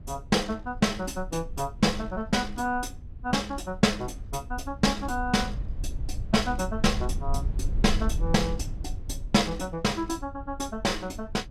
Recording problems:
low-frequency rumble; below 68 Hz, SNR 9 dB

